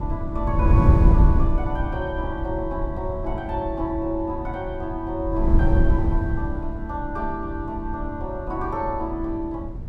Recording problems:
wind noise; below 110 Hz, SNR -3 dB

